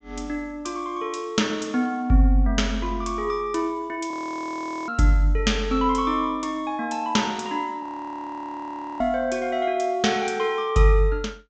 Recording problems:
low-pass filter; nothing above 8 kHz
audio freezing; at 4 s for 1 s and at 8 s for 1 s

